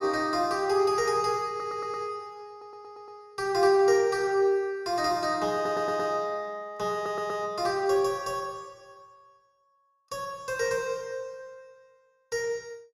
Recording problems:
audio stuttering; 4 times, first at 1.5 s

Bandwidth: 15.5 kHz